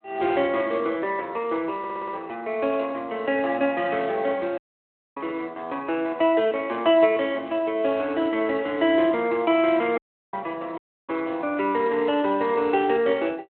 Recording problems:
phone line; 340 Hz to 3.3 kHz, Speex
audio stuttering; at 2 s
audio cutting out; at 4.5 s for 0.5 s, at 10 s and at 11 s

